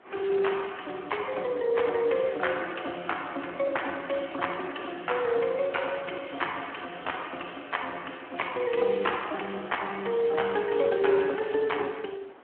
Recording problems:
phone line; 220 Hz to 3.3 kHz, Speex
hiss; SNR 23 dB

